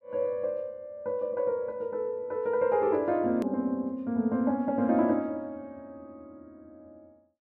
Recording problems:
edit click; at 3.5 s

